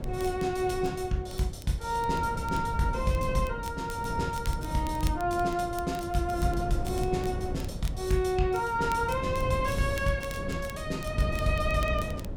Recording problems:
wind on the microphone; below 200 Hz, SNR 7 dB
crackle; vinyl, SNR 20 dB

